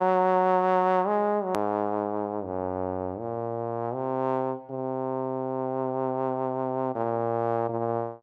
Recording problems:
edit click; at 1.5 s

